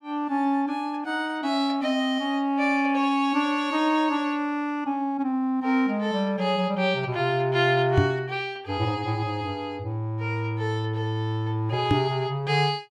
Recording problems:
microphone bump; at 8 s and at 12 s; peak +7 dB vs average level

